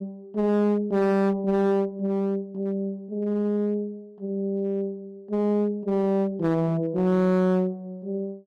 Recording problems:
distortion; hard clipping, uneven, signal-to-distortion ratio 9 dB

